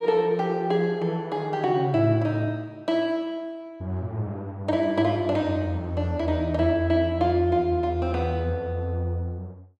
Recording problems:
none

